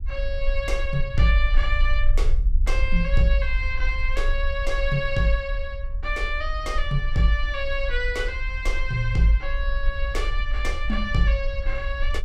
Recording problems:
rumble; below 46 Hz, strongest tone 20 Hz, SNR 2 dB

